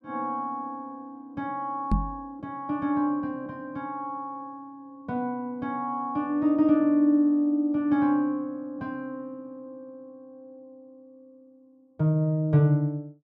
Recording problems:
microphone thump; at 2 s; peak +5 dB vs average level

